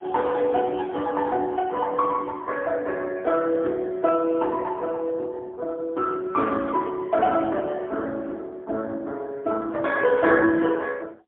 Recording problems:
phone line; 240 Hz to 3.4 kHz, AMR-NB, then MP3

